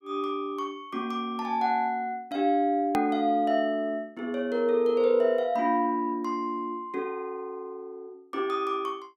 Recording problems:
edit click; at 3 s

